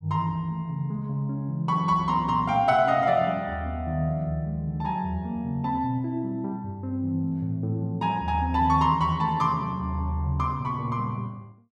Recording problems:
none

